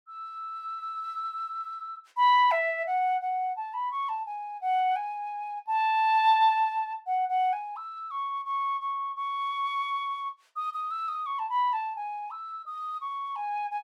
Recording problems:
none

